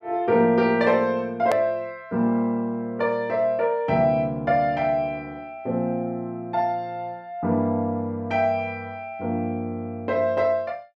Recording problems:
click at an edit; at 1.5 s

